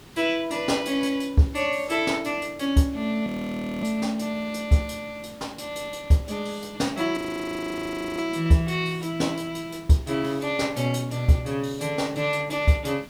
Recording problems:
background hiss; SNR 22 dB
frozen audio; at 3.5 s for 0.5 s and at 7 s for 1 s

